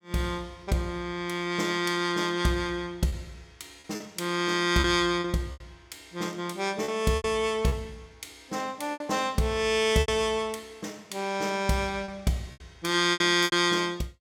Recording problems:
lost packets; 6% of the sound replaced, filled with repeated pitch periods

